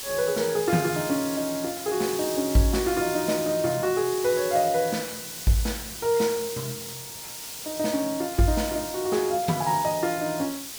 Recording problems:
hiss; SNR 8 dB

